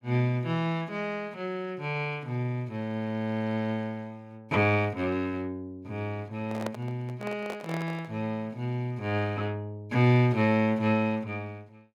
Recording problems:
microphone handling noise; from 6.5 to 8 s; peak -1 dB vs average level

